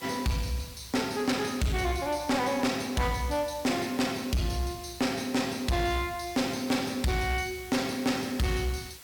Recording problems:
distorted audio; soft clipping, signal-to-distortion ratio 7 dB
hiss; slope 0 dB per octave, SNR 17 dB

